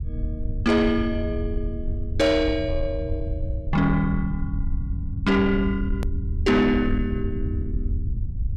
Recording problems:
distorted audio; soft clipping, signal-to-distortion ratio 11 dB
low-frequency rumble; below 90 Hz, SNR 6 dB
click at an edit; at 6 s

